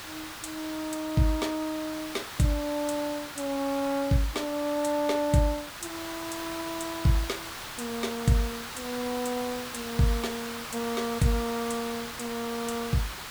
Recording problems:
hiss; SNR 8 dB

